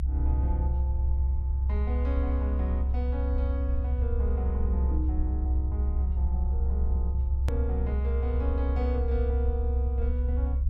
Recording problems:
rumble; below 68 Hz, strongest tone 66 Hz, SNR -9 dB
edit click; at 7.5 s

